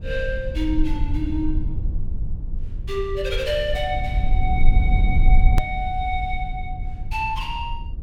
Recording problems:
rumble; below 58 Hz, SNR -2 dB
hard cut with a click; at 5.5 s

